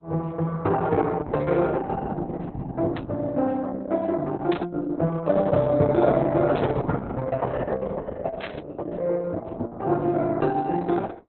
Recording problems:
lossy codec; Opus, log-spectral distance 3 dB, nothing above 4 kHz
burst of static; 4 times, first at 3 s; peak -7 dB vs average level

